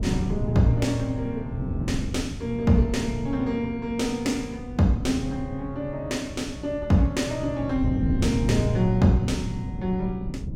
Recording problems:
wind on the microphone; below 210 Hz, SNR 6 dB

